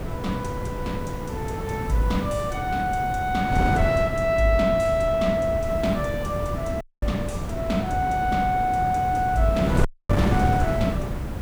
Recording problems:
background hiss; SNR 26 dB
wind noise; below 320 Hz, SNR 4 dB
audio cutting out; at 7 s and at 10 s

